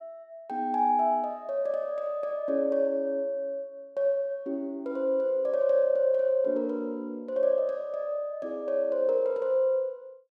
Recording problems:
none

